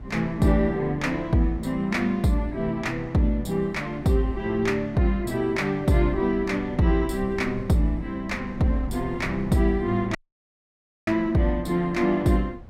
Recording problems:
wind noise; below 130 Hz, SNR 18 dB
dropout; at 10 s for 1 s

